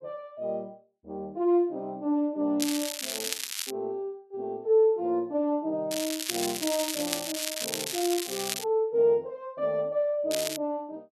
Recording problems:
crackling; from 2.5 to 3.5 s, from 6 to 8.5 s and at 10 s; loose cable, SNR 3 dB

